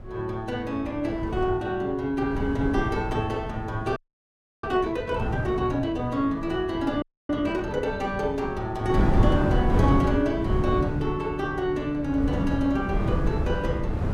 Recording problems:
wind on the microphone; below 210 Hz, SNR 3 dB
frozen audio; at 4 s for 0.5 s and at 7 s

